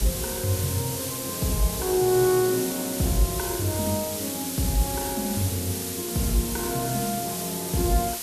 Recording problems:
hiss; slope +1 dB per octave, SNR 3 dB

